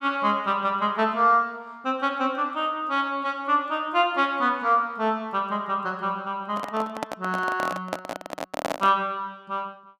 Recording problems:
microphone handling noise; from 6.5 to 9 s; peak +2 dB vs average level

